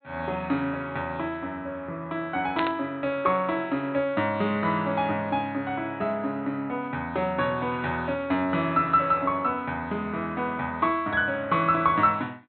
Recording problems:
treble cut off; nothing above 4.2 kHz
static burst; at 2.5 s; peak +1 dB vs average level

